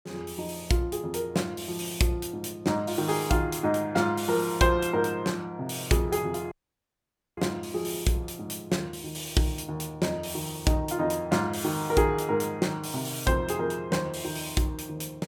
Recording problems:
dropout; at 6.5 s for 1 s

